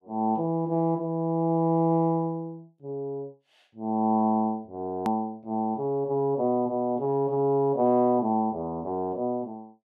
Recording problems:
edit click; at 5 s

